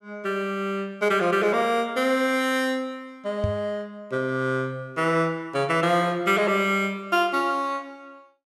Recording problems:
microphone bump; at 3.5 s; peak +1 dB vs average level

